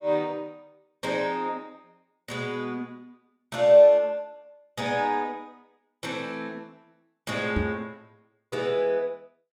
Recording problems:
microphone bump; at 7.5 s; peak +1 dB vs average level

